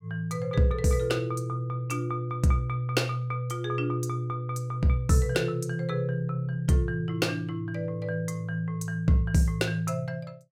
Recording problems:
none

